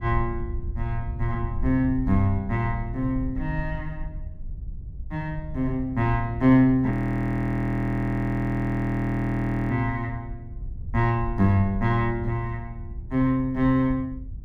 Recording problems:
wind noise; below 76 Hz, SNR 11 dB
audio freezing; at 7 s for 3 s

